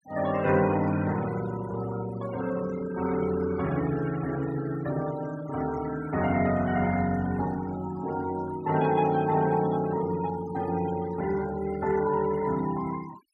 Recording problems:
denoising artefacts; signal-to-artefact ratio 16 dB

